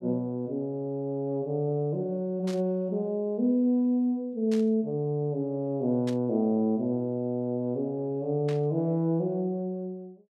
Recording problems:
static burst; 4 times, first at 2.5 s; peak -9 dB vs average level

